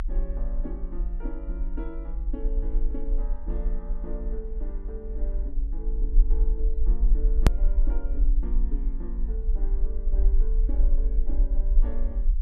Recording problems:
low-frequency rumble; below 44 Hz, strongest tone 28 Hz, SNR -13 dB
click at an edit; at 7.5 s

